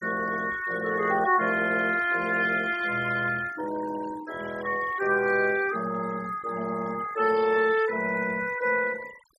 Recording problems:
noise reduction artefacts; signal-to-artefact ratio 16 dB

